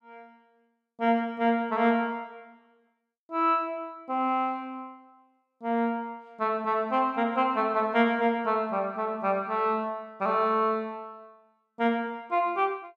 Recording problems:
none

